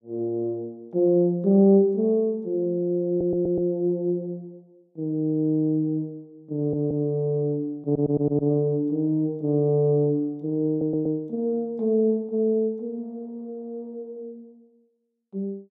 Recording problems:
audio stuttering; 4 times, first at 3 s

